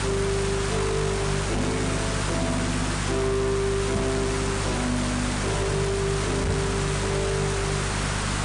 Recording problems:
lossy codec; MP3, log-spectral distance 13 dB, nothing above 10.1 kHz
distorted audio; soft clipping, signal-to-distortion ratio 7 dB
hum; 50 Hz, harmonics up to 600 Hz, SNR 4 dB
background hiss; SNR 1 dB
microphone bump; at 1.5 s, at 4 s and at 6.5 s; peak +3 dB vs average level

